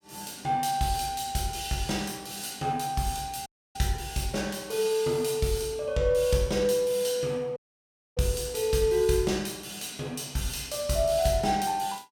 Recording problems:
dropout; at 3.5 s and at 7.5 s for 0.5 s

